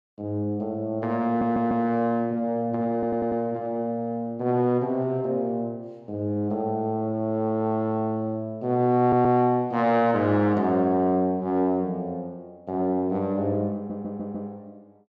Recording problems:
stutter; 4 times, first at 1.5 s

